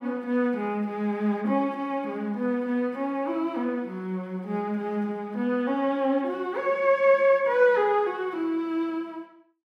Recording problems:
none

